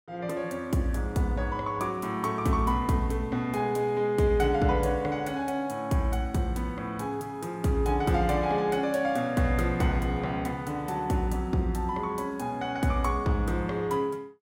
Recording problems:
none

